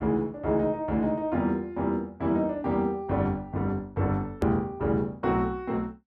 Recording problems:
hard cut with a click; at 4.5 s

